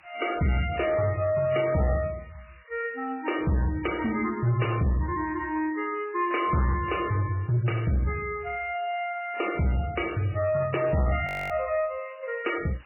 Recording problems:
lossy compression; MP3, log-spectral distance 13 dB, nothing above 2.8 kHz
distortion; soft clipping, signal-to-distortion ratio 11 dB
hiss; SNR 27 dB
audio freezing; at 11 s

